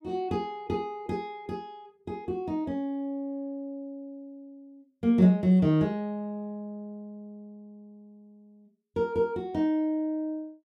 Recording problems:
none

